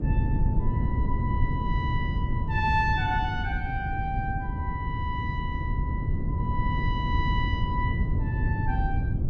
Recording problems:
wind noise; below 140 Hz, SNR -3 dB

